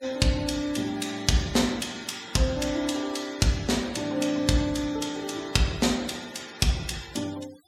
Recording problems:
noise reduction artefacts; signal-to-artefact ratio 18 dB

